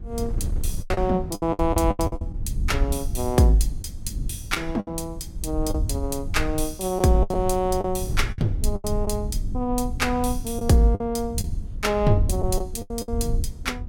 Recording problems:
low-frequency rumble; below 82 Hz, SNR 6 dB
wind on the microphone; below 84 Hz, SNR 13 dB
lost packets; 9% of the sound replaced, filled with the last packet

